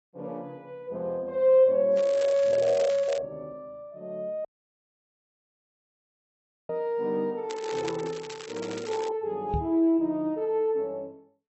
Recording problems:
codec artefacts; AAC, log-spectral distance 2 dB
crackling; from 2 to 3 s and from 7.5 to 9 s; loose cable, SNR 17 dB
audio cutting out; at 4.5 s for 2 s
microphone bump; at 6.5 s and at 9.5 s; peak 0 dB vs average level

